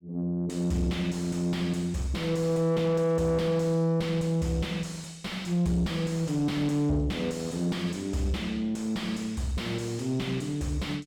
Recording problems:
distortion; soft clipping, signal-to-distortion ratio 7 dB

